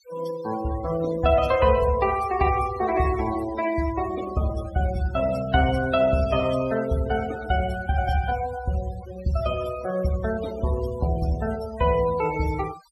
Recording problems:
noise reduction artefacts; signal-to-artefact ratio 16 dB

